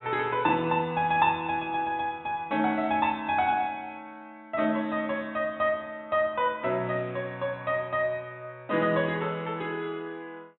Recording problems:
treble cut off; nothing above 3.9 kHz

